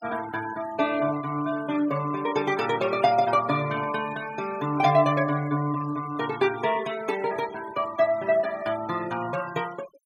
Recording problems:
denoising artefacts; signal-to-artefact ratio 17 dB

